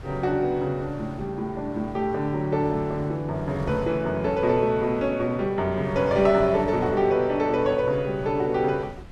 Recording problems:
wind noise; below 250 Hz, SNR 17 dB

